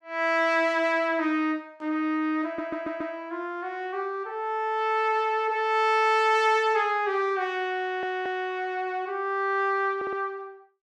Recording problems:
audio stuttering; at 2.5 s, at 8 s and at 10 s

